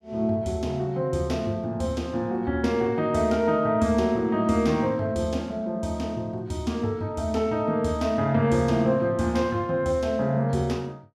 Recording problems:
none

